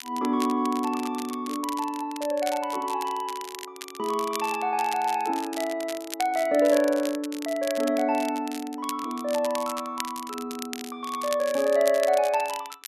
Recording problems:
crackling; vinyl, SNR 13 dB

